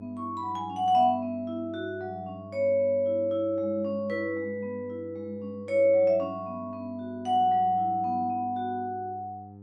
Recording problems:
electrical hum; 50 Hz, harmonics up to 800 Hz, SNR 18 dB

